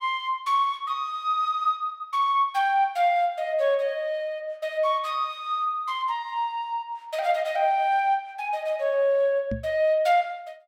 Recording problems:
microphone bump; at 9.5 s; peak -2 dB vs average level

